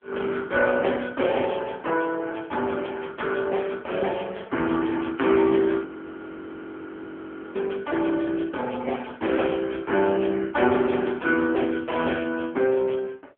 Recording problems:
telephone audio; 240 Hz to 3.3 kHz, AMR-NB
audio freezing; at 6 s for 1.5 s

